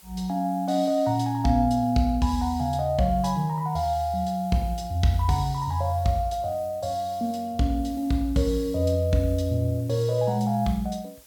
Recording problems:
background hiss; slope -1 dB per octave, SNR 26 dB

